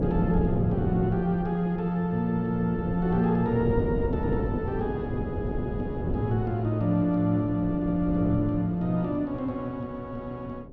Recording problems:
wind on the microphone; below 330 Hz, SNR 5 dB

